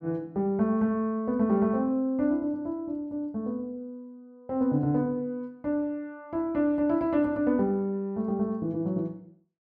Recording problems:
none

